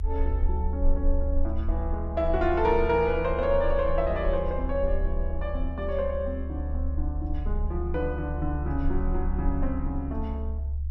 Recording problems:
rumble; below 72 Hz, strongest tone 24 Hz, SNR 2 dB

